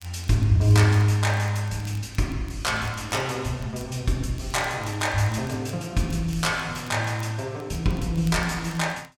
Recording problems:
crackle; vinyl, SNR 27 dB

